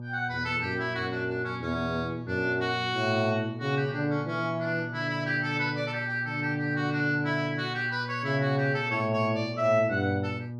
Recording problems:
mains hum; 60 Hz, harmonics up to 840 Hz, SNR 10 dB

